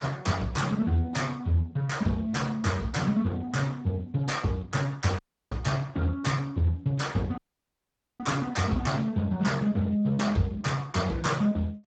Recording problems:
codec artefacts; Speex, log-spectral distance 3 dB, nothing above 7.6 kHz
audio cutting out; at 5 s and at 7.5 s for 1 s

